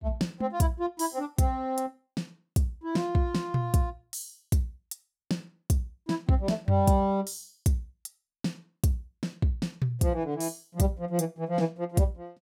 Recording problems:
none

